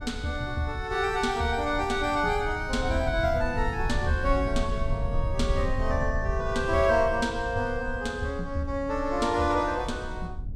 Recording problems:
low-frequency rumble; below 82 Hz, SNR 8 dB

